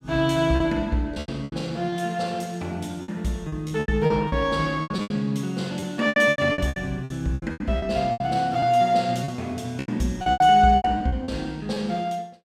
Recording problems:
lost packets; 15% of the sound replaced, filled with repeated pitch periods

